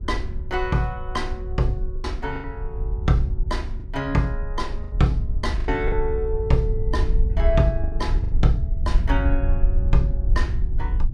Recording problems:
rumble; below 64 Hz, SNR 0 dB
packet loss; 5% of the sound replaced, filled with the last packet

